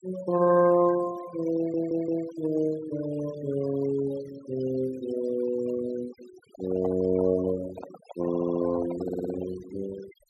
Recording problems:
denoising artefacts; signal-to-artefact ratio 17 dB
audio stuttering; at 1.5 s, at 8.5 s and at 9 s
handling noise; from 6.5 to 9.5 s; peak -5 dB vs average level

